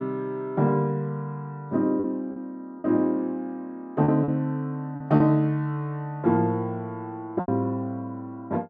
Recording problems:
lost packets; 4% of the sound replaced, filled with repeated pitch periods

